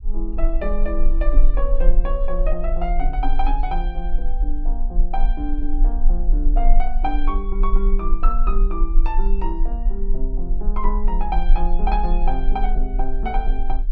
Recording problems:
rumble; below 32 Hz, strongest tone 18 Hz, SNR -5 dB

